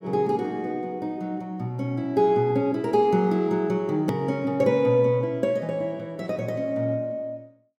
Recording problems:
hard cut with a click; at 4 s

